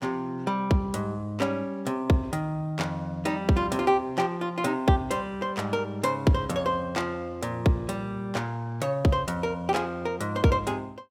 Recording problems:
none

